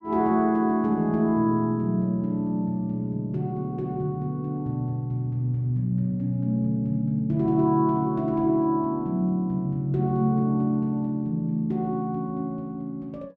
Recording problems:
none

